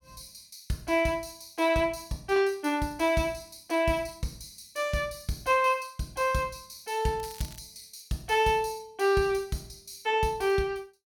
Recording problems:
crackling; at 7 s; loose cable, SNR 19 dB

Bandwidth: 17.5 kHz